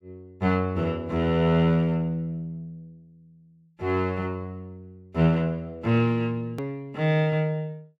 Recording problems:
click at an edit; at 6.5 s

